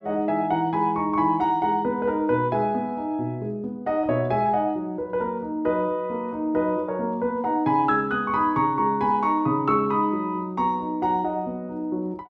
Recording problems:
none

